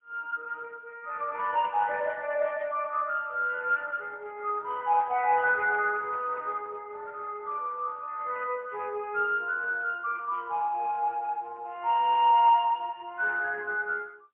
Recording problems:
telephone audio; 370 Hz to 3.5 kHz, AMR-NB, then MP3

